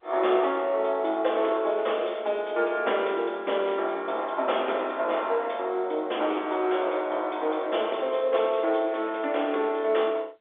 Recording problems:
phone line; 300 Hz to 3.6 kHz, G.711

